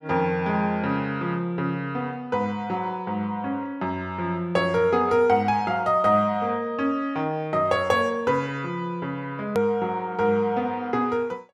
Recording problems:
edit click; at 9.5 s

